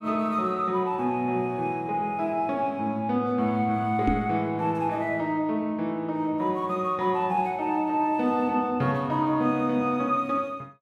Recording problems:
knock on the microphone; at 4 s; peak +4 dB vs average level

